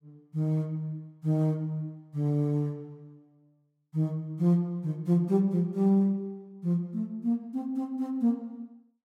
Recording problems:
none

